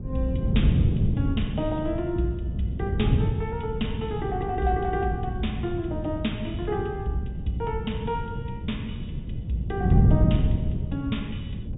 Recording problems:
treble missing; nothing above 4 kHz
wind on the microphone; below 170 Hz, SNR -2 dB

